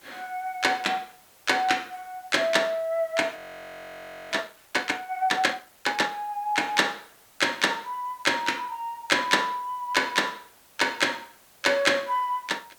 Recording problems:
hiss; slope -2 dB per octave, SNR 28 dB
frozen audio; at 3.5 s for 1 s

